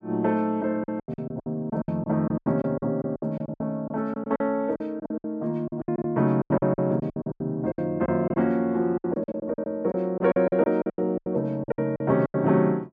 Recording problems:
lost packets; 18% of the sound replaced, filled with silence

